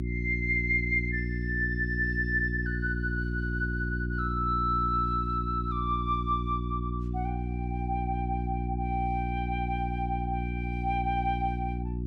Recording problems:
mains hum; 60 Hz, harmonics up to 360 Hz, SNR 2 dB

